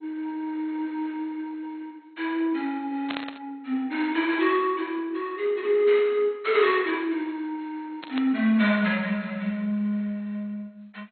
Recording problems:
lossy compression; MP2, log-spectral distance 2 dB, nothing above 4.2 kHz
static burst; at 3 s and at 8 s; peak -3 dB vs average level

